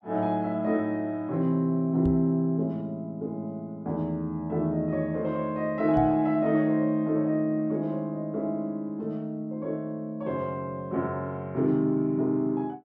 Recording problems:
microphone thump; at 2 s and at 6 s; peak -1 dB vs average level

